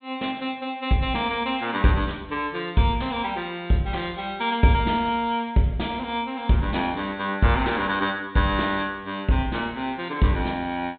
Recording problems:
low-pass filter; nothing above 4 kHz

